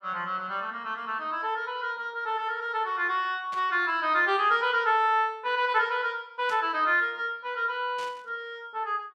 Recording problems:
burst of static; at 3.5 s, at 6.5 s and at 8 s; peak -12 dB vs average level

